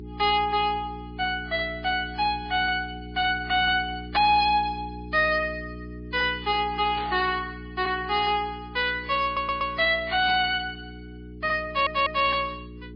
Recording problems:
lossy codec; MP3, log-spectral distance 3 dB, nothing above 4.1 kHz
distorted audio; hard clipping, signal-to-distortion ratio 10 dB
electrical hum; 60 Hz, harmonics up to 420 Hz, SNR 15 dB
burst of static; at 7 s and at 10 s; peak -8 dB vs average level
audio stuttering; at 9.5 s and at 12 s

